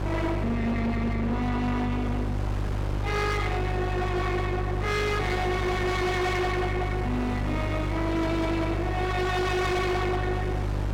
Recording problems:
distortion; hard clipping, signal-to-distortion ratio 6 dB
hum; 50 Hz, harmonics up to 750 Hz, SNR 2 dB
wind on the microphone; below 1.2 kHz, SNR 12 dB

